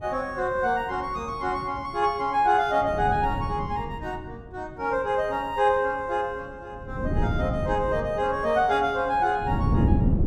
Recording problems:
wind on the microphone; below 220 Hz, SNR 4 dB

